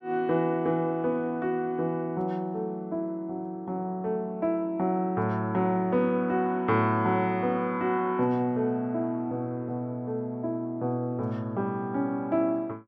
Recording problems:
none

